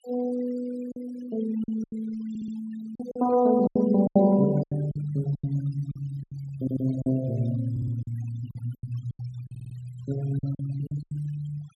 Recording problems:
denoising artefacts; signal-to-artefact ratio 19 dB
packet loss; 11% of the sound replaced, filled with silence
audio stuttering; 4 times, first at 2.5 s

